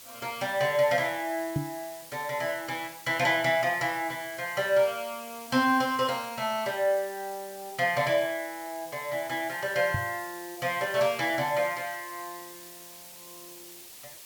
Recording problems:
hiss; SNR 16 dB
microphone bump; at 1.5 s and at 10 s; peak +2 dB vs average level

